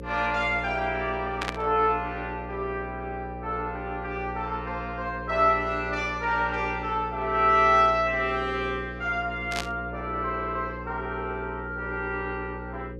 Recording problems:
electrical hum; 60 Hz, harmonics up to 540 Hz, SNR 11 dB
burst of static; at 1.5 s and at 9.5 s; peak +1 dB vs average level

